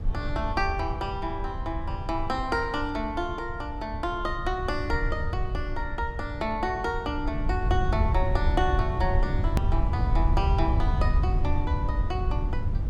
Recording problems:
rumble; below 86 Hz, SNR -1 dB
click at an edit; at 9.5 s

